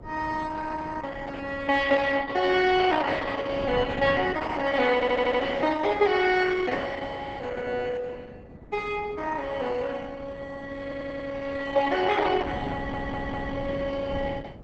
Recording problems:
codec artefacts; Opus, log-spectral distance 4 dB, nothing above 8 kHz
wind on the microphone; below 380 Hz, SNR 15 dB
stutter; at 5 s, at 11 s and at 13 s

